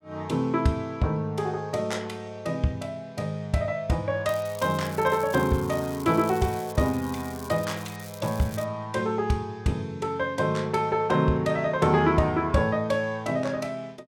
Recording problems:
crackle; from 4.5 to 8.5 s; loose cable, SNR 18 dB

